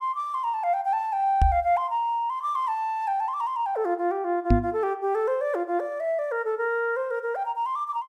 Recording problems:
microphone bump; at 1.5 s and at 4.5 s; peak +8 dB vs average level

